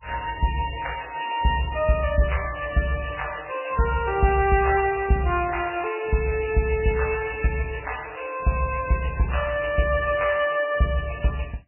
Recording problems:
codec artefacts; MP3, log-spectral distance 9 dB, nothing above 2.9 kHz

